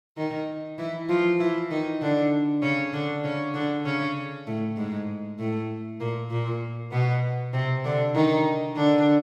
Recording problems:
none

